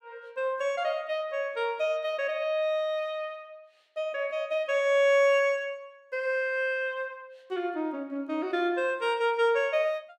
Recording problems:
none

